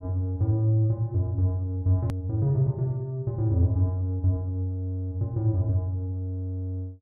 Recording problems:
edit click; at 2 s

